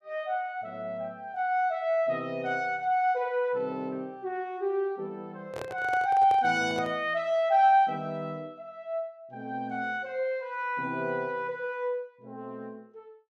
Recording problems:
handling noise; from 5.5 to 7 s; peak -5 dB vs average level

